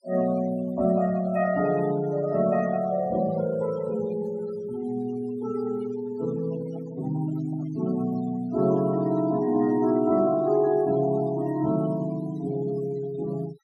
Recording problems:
noise reduction artefacts; signal-to-artefact ratio 18 dB
microphone handling noise; from 6.5 to 8 s; peak -14 dB vs average level

